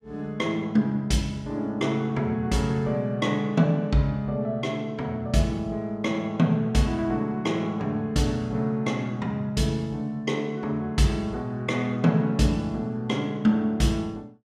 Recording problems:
none

